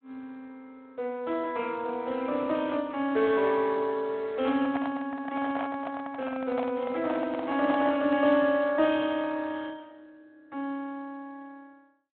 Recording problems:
phone line; 240 Hz to 4 kHz, Speex
microphone handling noise; from 4.5 to 8 s; peak -1 dB vs average level

